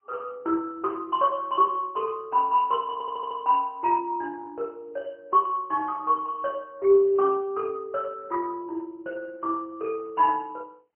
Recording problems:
phone line; 300 Hz to 3.1 kHz, AMR-NB, then MP3
audio stuttering; at 3 s

